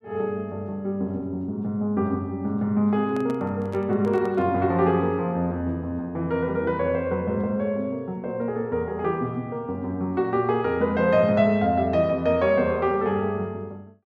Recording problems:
handling noise; from 3 to 4.5 s; peak -10 dB vs average level

